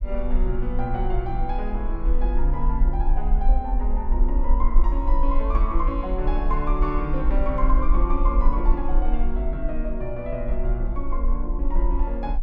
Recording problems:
rumble; below 42 Hz, SNR -4 dB

